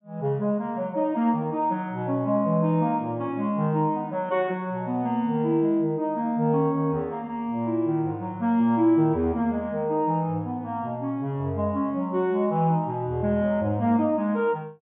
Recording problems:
treble cut off; nothing above 3.5 kHz

